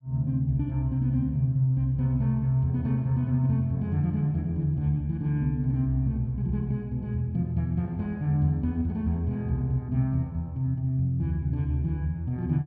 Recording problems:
none

